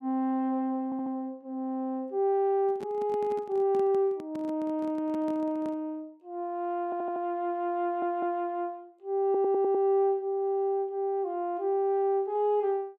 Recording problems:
audio stuttering; 4 times, first at 1 s
handling noise; from 2.5 to 6 s; peak -10 dB vs average level

